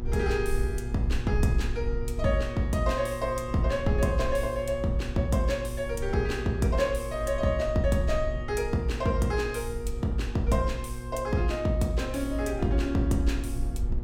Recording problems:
electrical hum; 60 Hz, harmonics up to 1.2 kHz, SNR 12 dB
rumble; below 60 Hz, SNR 8 dB

